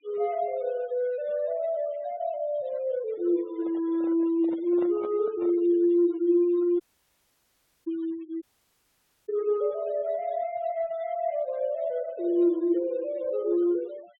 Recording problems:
treble missing; nothing above 3.9 kHz
noise reduction artefacts; signal-to-artefact ratio 27 dB
microphone handling noise; from 3.5 to 5.5 s; peak -9 dB vs average level
audio cutting out; at 7 s for 1 s and at 8.5 s for 1 s

